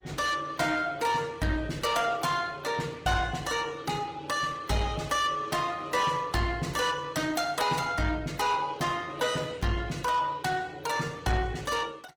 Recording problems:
lossy codec; Opus, log-spectral distance 4 dB, nothing above 19 kHz
distorted audio; soft clipping, signal-to-distortion ratio 11 dB

